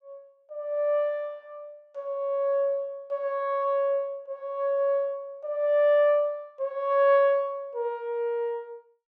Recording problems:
none

